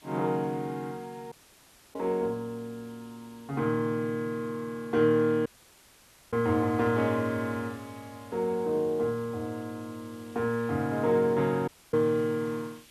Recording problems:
background hiss; SNR 25 dB
dropout; at 1.5 s for 0.5 s, at 5.5 s for 1 s and at 12 s

